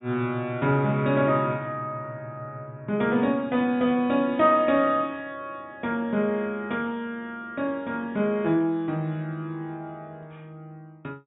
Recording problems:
low-pass filter; nothing above 3.8 kHz

